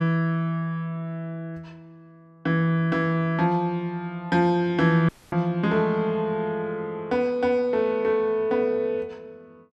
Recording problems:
dropout; at 5 s

